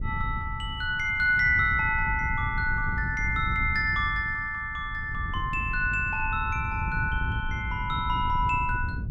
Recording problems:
wind on the microphone; below 120 Hz, SNR 8 dB

